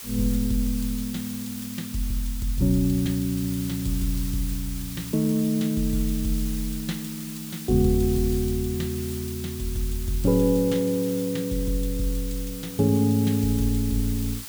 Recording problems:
hiss; slope +1 dB per octave, SNR 11 dB

